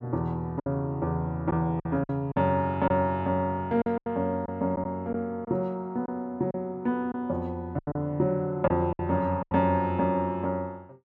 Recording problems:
packet loss; 7% of the sound replaced, filled with silence

